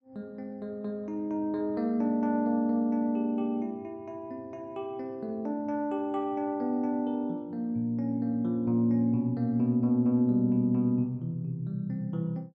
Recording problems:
none

